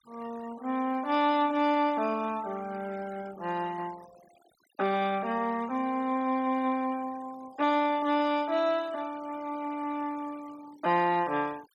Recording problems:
denoising artefacts; signal-to-artefact ratio 21 dB

